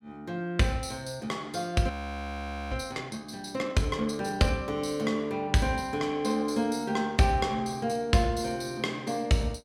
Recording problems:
audio freezing; at 2 s for 1 s

